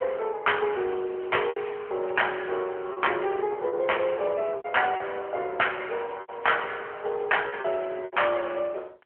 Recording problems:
telephone audio; 300 Hz to 3.2 kHz, AMR-NB
distortion; soft clipping, signal-to-distortion ratio 8 dB
lost packets; 6% of the sound replaced, filled with repeated pitch periods
crackling; from 0.5 to 3 s and from 6 to 8 s; loose cable, SNR 28 dB

